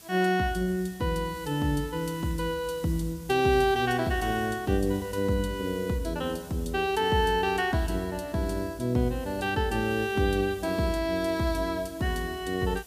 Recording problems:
background hiss; SNR 21 dB

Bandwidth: 15 kHz